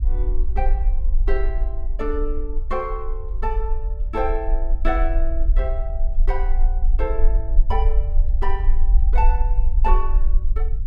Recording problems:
rumble; below 42 Hz, strongest tone 20 Hz, SNR -6 dB

